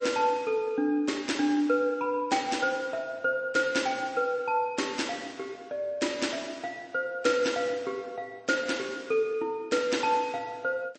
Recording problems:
lossy codec; MP3, log-spectral distance 3 dB, nothing above 8.2 kHz

